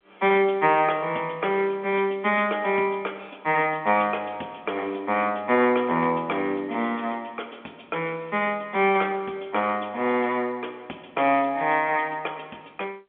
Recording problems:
telephone audio; 320 Hz to 3.5 kHz, G.711

